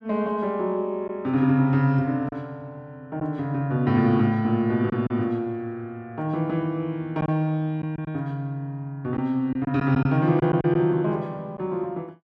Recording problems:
packet loss; 3% of the sound replaced, filled with silence

